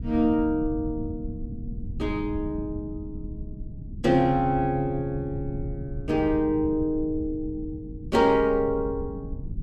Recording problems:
rumble; below 140 Hz, SNR 11 dB

